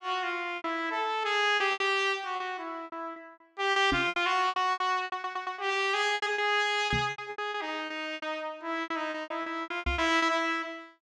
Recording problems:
lost packets; 17% of the sound replaced, filled with repeated pitch periods
microphone thump; at 4 s, at 7 s and at 10 s; peak 0 dB vs average level
audio stuttering; at 5 s

